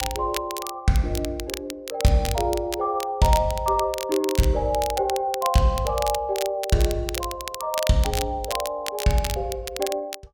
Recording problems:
crackle; vinyl, SNR 10 dB

